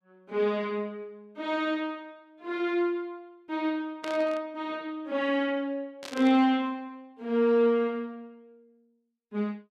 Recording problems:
burst of static; at 4 s and at 6 s; peak -7 dB vs average level

